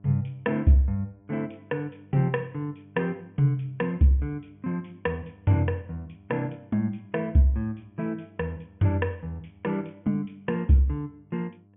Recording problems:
treble missing; nothing above 3.3 kHz
electrical hum; 50 Hz, harmonics up to 700 Hz, SNR 27 dB

